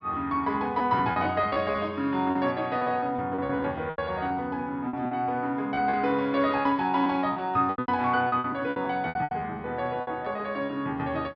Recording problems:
treble cut off; nothing above 5.5 kHz
lost packets; 12% of the sound replaced, filled with repeated pitch periods

